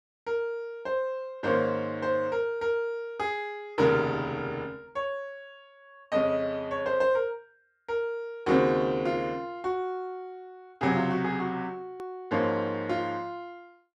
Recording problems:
hard cut with a click; at 12 s

